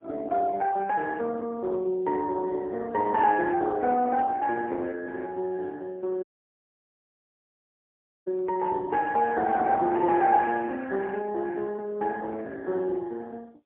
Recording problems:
telephone audio; 300 Hz to 2.5 kHz, AMR-NB, then MP3
dropout; at 6 s for 2 s

